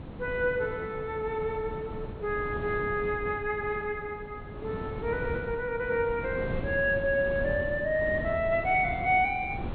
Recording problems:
treble missing; nothing above 4.2 kHz
wind noise; below 360 Hz, SNR 10 dB

